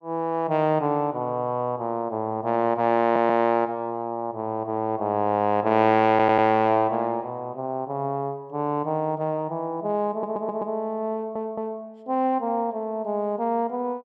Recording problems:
audio stuttering; 4 times, first at 3 s

